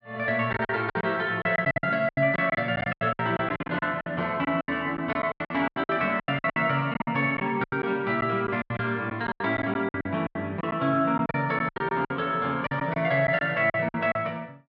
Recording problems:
packet loss; 17% of the sound replaced, filled with silence

